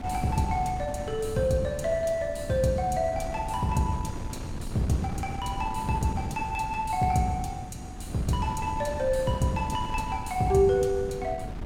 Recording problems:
electrical hum; 50 Hz, harmonics up to 450 Hz, SNR 22 dB
wind noise; below 230 Hz, SNR 10 dB

